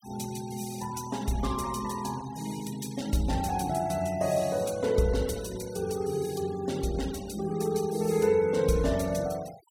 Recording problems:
denoising artefacts; signal-to-artefact ratio 18 dB

